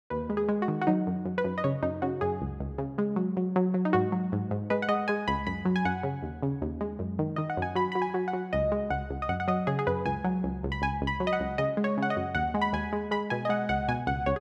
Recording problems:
none

